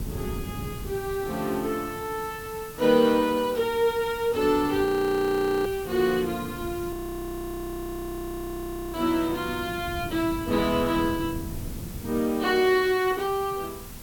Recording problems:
background hiss; slope -1 dB per octave, SNR 17 dB
wind noise; below 210 Hz, SNR 14 dB
frozen audio; at 5 s for 1 s and at 7 s for 2 s

